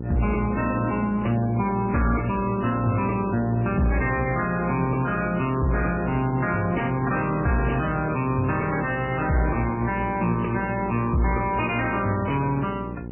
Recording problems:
codec artefacts; MP3, log-spectral distance 4 dB, nothing above 2.7 kHz
distortion; soft clipping, signal-to-distortion ratio 11 dB
electrical hum; 60 Hz, harmonics up to 840 Hz, SNR 10 dB

